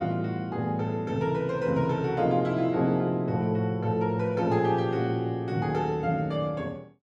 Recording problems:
none

